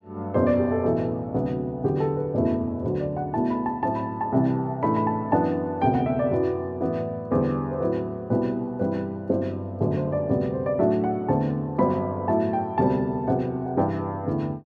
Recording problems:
none

